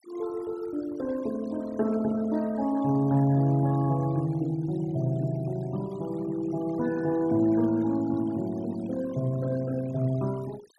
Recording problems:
denoising artefacts; signal-to-artefact ratio 21 dB

